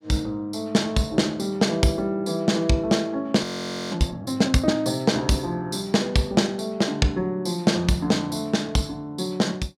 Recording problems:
audio freezing; at 3.5 s

